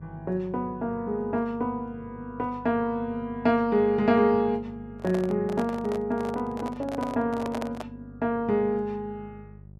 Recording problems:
hum; 50 Hz, harmonics up to 600 Hz, SNR 20 dB
handling noise; from 5 to 8 s; peak -3 dB vs average level

